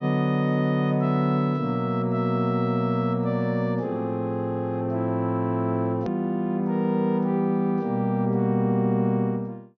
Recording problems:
treble missing; nothing above 6.3 kHz
click at an edit; at 6 s

